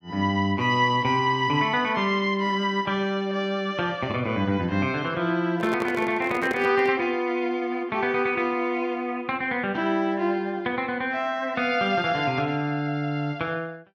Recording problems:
microphone handling noise; from 5.5 to 7 s; peak -2 dB vs average level

